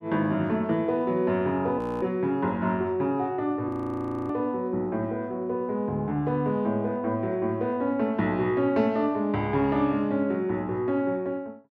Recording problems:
audio freezing; at 2 s and at 3.5 s for 0.5 s

